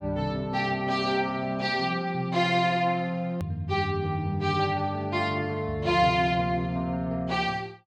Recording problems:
click at an edit; at 3.5 s

